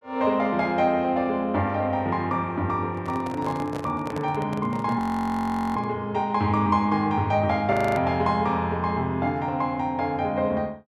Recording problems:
handling noise; from 3 to 6 s; peak -6 dB vs average level
audio freezing; at 5 s for 1 s and at 7.5 s

